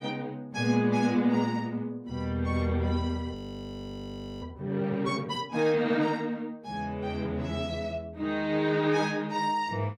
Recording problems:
frozen audio; at 3.5 s for 1 s

